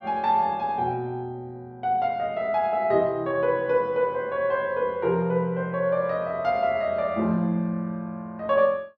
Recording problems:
none

